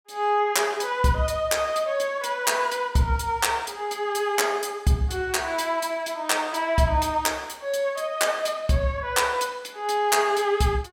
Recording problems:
none

